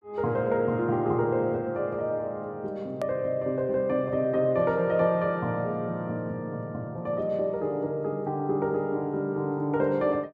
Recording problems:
click at an edit; at 3 s

